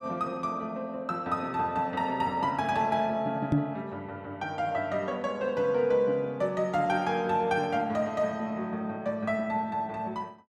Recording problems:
microphone bump; at 3.5 s; peak +9 dB vs average level

